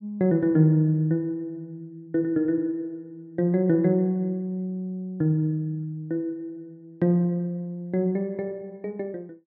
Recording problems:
none

